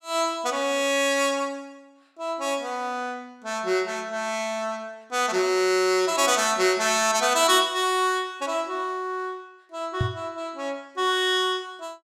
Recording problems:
microphone bump; at 10 s; peak +2 dB vs average level

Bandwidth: 16 kHz